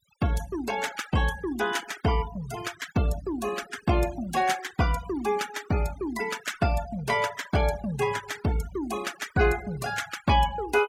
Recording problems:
noise reduction artefacts; signal-to-artefact ratio 15 dB

